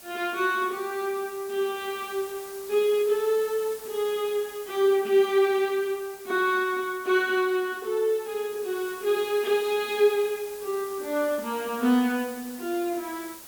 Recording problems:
hiss; slope -1 dB per octave, SNR 17 dB

